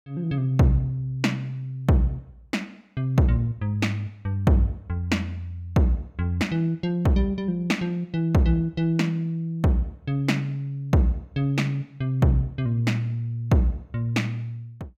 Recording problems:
none

